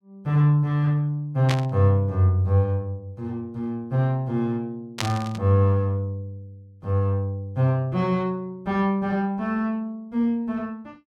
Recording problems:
burst of static; at 1.5 s and at 5 s; peak +1 dB vs average level

